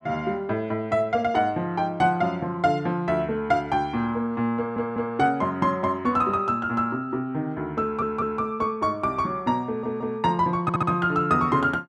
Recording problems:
audio stuttering; 4 times, first at 4.5 s

